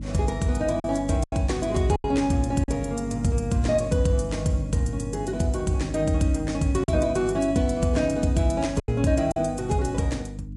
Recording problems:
lossy compression; MP3, log-spectral distance 2 dB, nothing above 11.3 kHz
hum; 50 Hz, harmonics up to 300 Hz, SNR 10 dB
packet loss; 4% of the sound replaced, filled with silence

